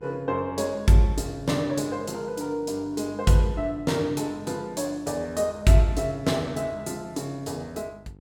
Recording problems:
hum; 50 Hz, harmonics up to 950 Hz, SNR 25 dB

